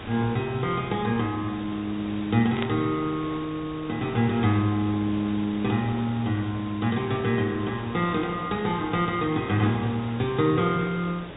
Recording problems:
treble missing; nothing above 4 kHz
hiss; SNR 13 dB
burst of static; at 2.5 s; peak -2 dB vs average level

